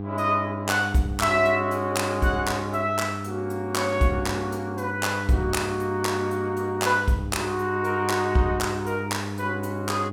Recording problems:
hum; 50 Hz, harmonics up to 900 Hz, SNR 8 dB

